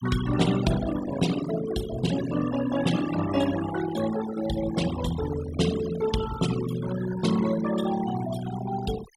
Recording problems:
noise reduction artefacts; signal-to-artefact ratio 9 dB

